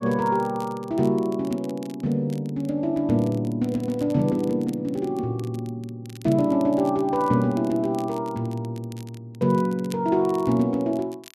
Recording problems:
crackle; vinyl, SNR 25 dB

